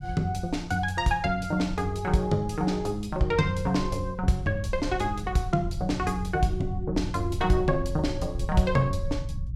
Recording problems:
rumble; below 96 Hz, SNR 9 dB

